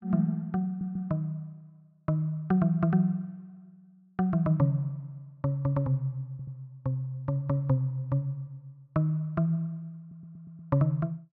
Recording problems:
stutter; at 0.5 s, at 6.5 s and at 10 s

